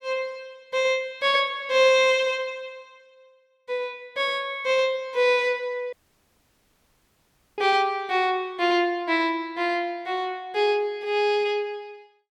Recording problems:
audio cutting out; at 6 s for 1.5 s

